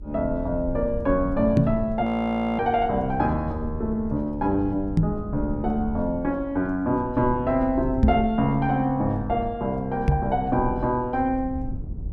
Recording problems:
low-frequency rumble; below 110 Hz, SNR 11 dB
microphone bump; 4 times, first at 1.5 s; peak +9 dB vs average level
frozen audio; at 2 s for 0.5 s

